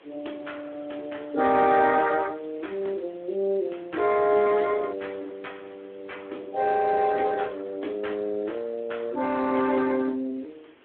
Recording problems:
phone line; 240 Hz to 3.6 kHz, Speex
hiss; SNR 28 dB

